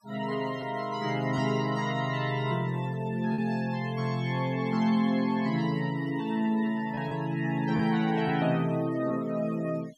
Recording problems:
denoising artefacts; signal-to-artefact ratio 21 dB
lost packets; 1.4% of the sound replaced, filled with repeated pitch periods

